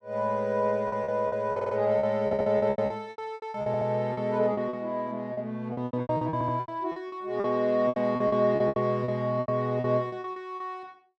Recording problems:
packet loss; 18% of the sound replaced, filled with repeated pitch periods
stutter; 4 times, first at 1.5 s

